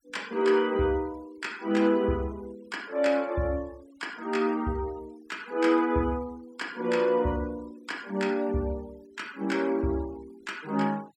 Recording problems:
denoising artefacts; signal-to-artefact ratio 25 dB

